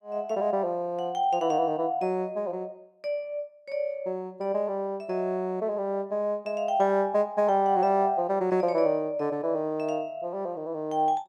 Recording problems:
none

